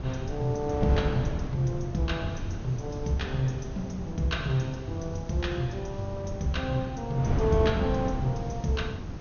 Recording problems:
low-pass filter; nothing above 6.6 kHz
hiss; slope 0 dB per octave, SNR 28 dB
wind noise; below 240 Hz, SNR 4 dB

